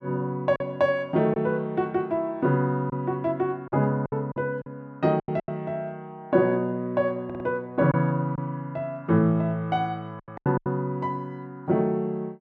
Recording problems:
lost packets; 6% of the sound replaced, filled with silence
audio stuttering; at 7.5 s

